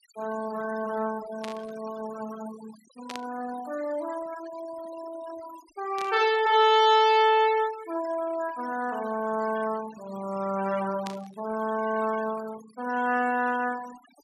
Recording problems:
denoising artefacts; signal-to-artefact ratio 18 dB
burst of static; 4 times, first at 1.5 s; peak -7 dB vs average level

